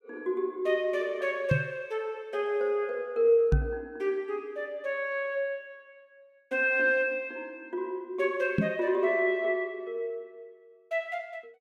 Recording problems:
knock on the microphone; at 1.5 s, at 3.5 s and at 8.5 s; peak +8 dB vs average level

